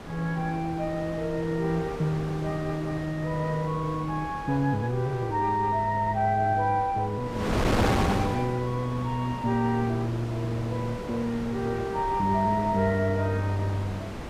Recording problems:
wind noise; below 980 Hz, SNR 7 dB

